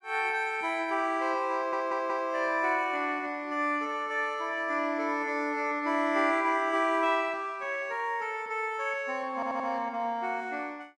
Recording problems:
stutter; at 1.5 s and at 9.5 s

